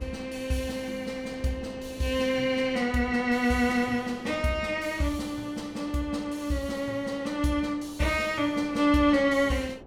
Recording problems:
wind noise; below 510 Hz, SNR 21 dB

